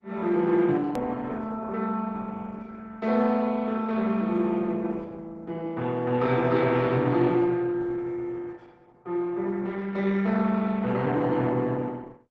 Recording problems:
lossy codec; Opus, log-spectral distance 3 dB, nothing above 13.1 kHz
click at an edit; at 1 s

